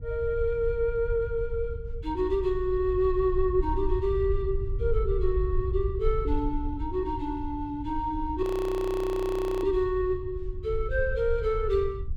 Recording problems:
rumble; below 66 Hz, SNR 6 dB
audio freezing; at 8.5 s for 1 s

